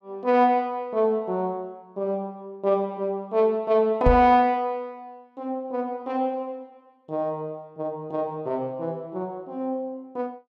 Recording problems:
knock on the microphone; at 4 s; peak +6 dB vs average level

